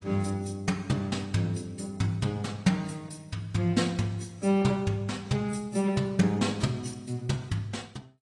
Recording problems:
codec artefacts; AAC, log-spectral distance 3 dB, nothing above 9.5 kHz

